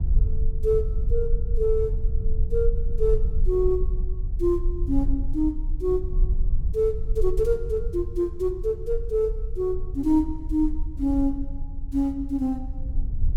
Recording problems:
rumble; below 50 Hz, SNR 3 dB

